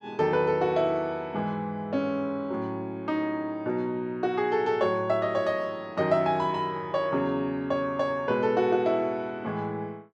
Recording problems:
none

